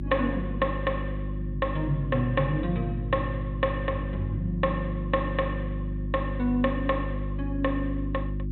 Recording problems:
treble cut off; nothing above 4 kHz
hum; 50 Hz, harmonics up to 350 Hz, SNR 3 dB

